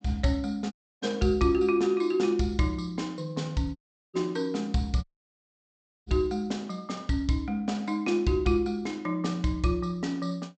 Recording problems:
low-pass filter; nothing above 8 kHz
dropout; at 0.5 s, at 4 s and at 5 s for 1 s

